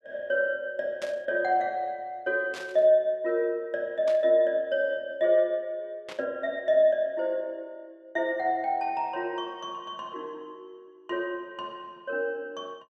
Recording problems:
burst of static; 4 times, first at 1 s; peak -9 dB vs average level

